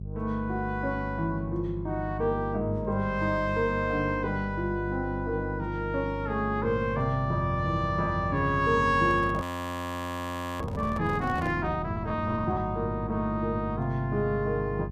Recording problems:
hum; 50 Hz, harmonics up to 400 Hz, SNR 8 dB
microphone handling noise; from 9 to 12 s; peak -7 dB vs average level
audio freezing; at 9.5 s for 1 s

